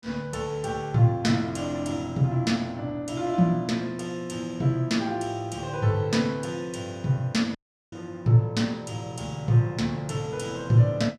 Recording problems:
dropout; at 7.5 s

